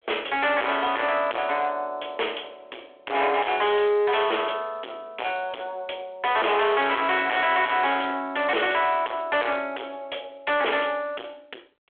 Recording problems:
phone line; 340 Hz to 3.5 kHz, G.726
distortion; hard clipping, signal-to-distortion ratio 5 dB

